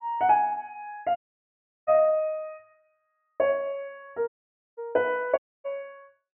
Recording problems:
treble missing; nothing above 3.1 kHz
audio cutting out; at 1 s for 0.5 s, at 4.5 s and at 5.5 s

